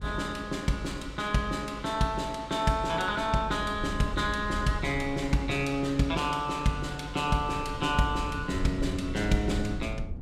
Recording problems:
rumble; below 100 Hz, SNR 11 dB

